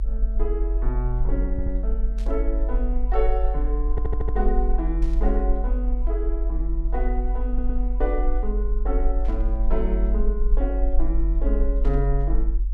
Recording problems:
rumble; below 46 Hz, strongest tone 44 Hz, SNR -5 dB
stutter; at 1.5 s, at 4 s and at 7.5 s
static burst; 4 times, first at 2 s; peak -13 dB vs average level

